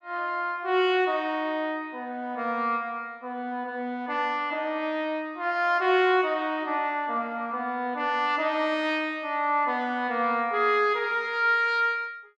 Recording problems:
none

